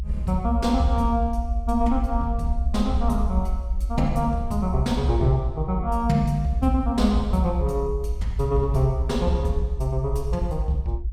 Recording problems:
rumble; below 66 Hz, SNR 4 dB

